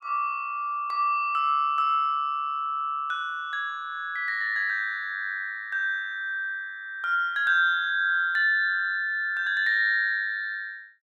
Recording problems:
none

